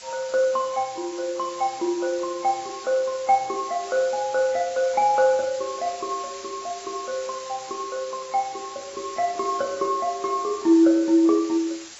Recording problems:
lossy codec; AAC, log-spectral distance 11 dB
background hiss; slope +1 dB per octave, SNR 16 dB

